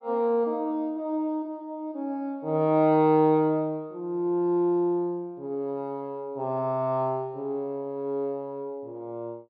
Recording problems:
treble cut off; nothing above 5.1 kHz

